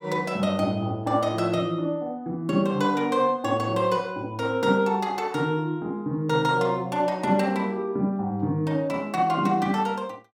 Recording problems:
none

